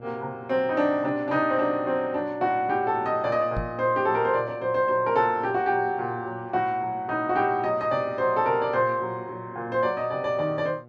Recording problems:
mains hum; 60 Hz, harmonics up to 840 Hz, SNR 22 dB
knock on the microphone; at 3.5 s; peak -3 dB vs average level

